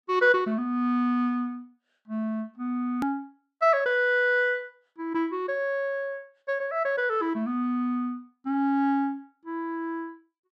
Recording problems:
click at an edit; at 3 s

